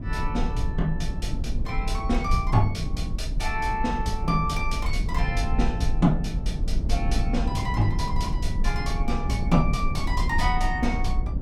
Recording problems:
rumble; below 78 Hz, SNR 1 dB

